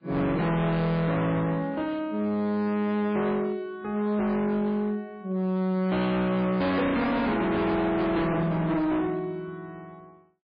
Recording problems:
lossy codec; MP3, log-spectral distance 2 dB, nothing above 4.6 kHz
distorted audio; hard clipping, signal-to-distortion ratio 6 dB

